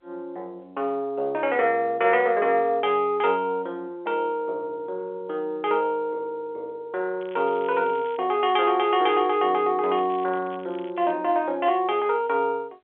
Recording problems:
telephone audio; 320 Hz to 3.5 kHz, G.711
crackle; from 7 to 8 s and from 10 to 11 s; loose cable, SNR 26 dB

